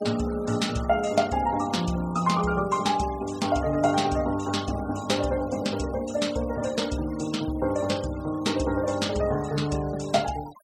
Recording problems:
noise reduction artefacts; signal-to-artefact ratio 18 dB

